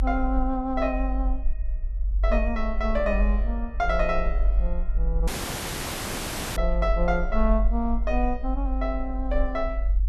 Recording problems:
rumble; below 48 Hz, strongest tone 46 Hz, SNR 0 dB
dropout; at 5.5 s for 1.5 s

